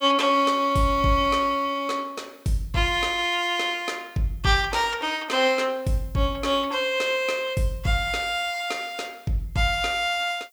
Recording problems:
background hiss; slope +3 dB per octave, SNR 30 dB

